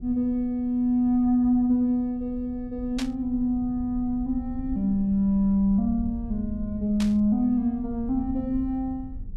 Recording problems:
rumble; below 80 Hz, SNR 15 dB
burst of static; at 3 s and at 7 s; peak -5 dB vs average level

